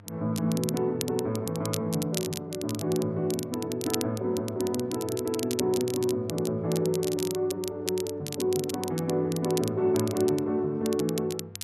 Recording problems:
electrical hum; 50 Hz, harmonics up to 900 Hz, SNR 20 dB
crackle; vinyl, SNR 10 dB

